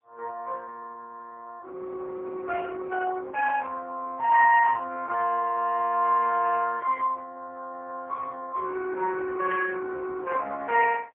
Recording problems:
telephone audio; 280 Hz to 2.8 kHz, AMR-NB, then MP3
static burst; at 9.5 s; peak -10 dB vs average level

